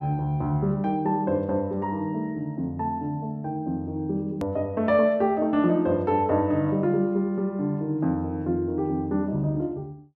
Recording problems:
edit click; at 4.5 s

